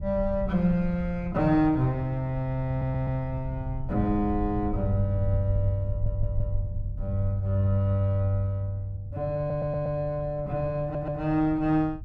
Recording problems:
rumble; below 84 Hz, SNR 10 dB
audio stuttering; 4 times, first at 2.5 s

